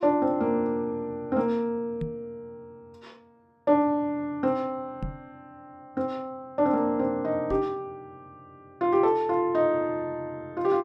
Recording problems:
microphone bump; at 2 s, at 5 s and at 7.5 s; peak -2 dB vs average level

